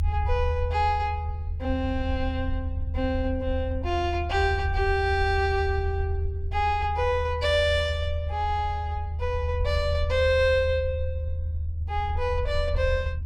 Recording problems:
low-frequency rumble; below 80 Hz, strongest tone 78 Hz, SNR 3 dB

